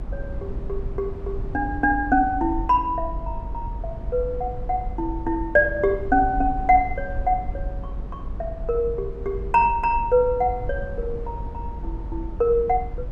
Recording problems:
low-frequency rumble; below 72 Hz, SNR 10 dB

